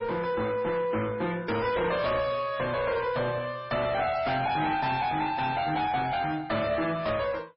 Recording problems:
lossy codec; MP3, log-spectral distance 3 dB, nothing above 4.8 kHz
distorted audio; soft clipping, signal-to-distortion ratio 6 dB

